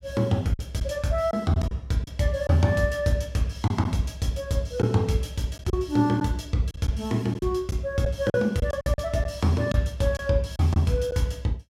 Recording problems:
packet loss; 6% of the sound replaced, filled with silence

